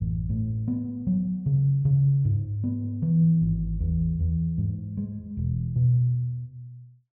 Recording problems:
treble missing; nothing above 6.2 kHz

